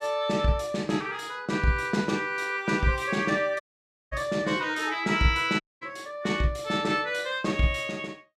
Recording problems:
dropout; at 3.5 s for 0.5 s and at 5.5 s

